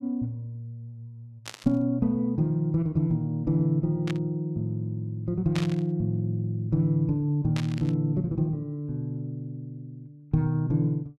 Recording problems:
static burst; 4 times, first at 1.5 s; peak -4 dB vs average level

